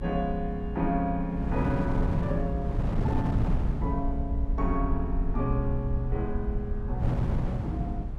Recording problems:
low-frequency rumble; below 58 Hz, SNR 3 dB
wind on the microphone; below 210 Hz, SNR 1 dB

